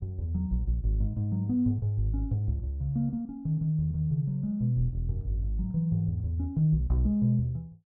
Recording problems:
none

